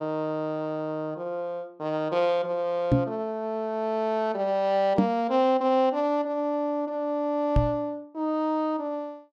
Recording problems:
knock on the microphone; at 3 s, at 5 s and at 7.5 s; peak +8 dB vs average level

